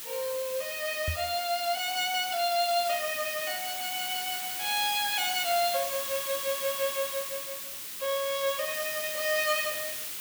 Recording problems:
background hiss; SNR 4 dB
microphone bump; at 1 s; peak 0 dB vs average level

